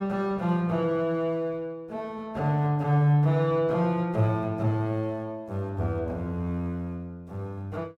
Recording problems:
none

